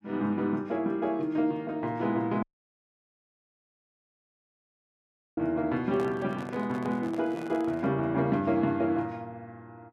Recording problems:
dropout; at 2.5 s for 3 s
handling noise; from 6 to 8 s; peak -8 dB vs average level

